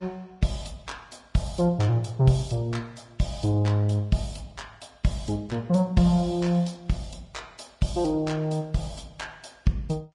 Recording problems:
lossy compression; Vorbis, log-spectral distance 3 dB, nothing above 10.1 kHz

